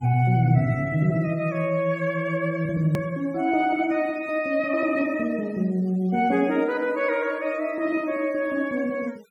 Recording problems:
noise reduction artefacts; signal-to-artefact ratio 28 dB
click at an edit; at 3 s

